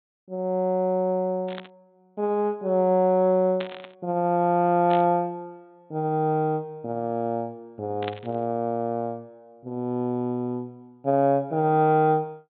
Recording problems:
low-pass filter; nothing above 4 kHz
burst of static; 4 times, first at 1.5 s; peak -6 dB vs average level

